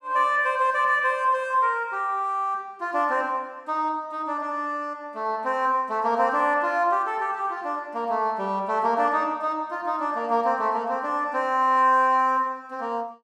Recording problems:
none

